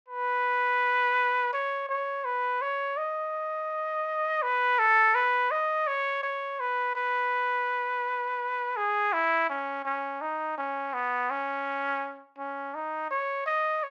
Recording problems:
none

